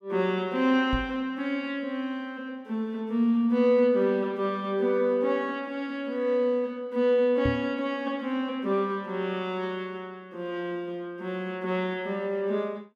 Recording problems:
microphone thump; at 1 s and at 7.5 s; peak +2 dB vs average level

